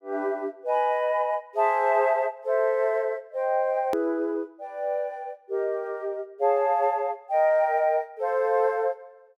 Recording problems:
edit click; at 4 s

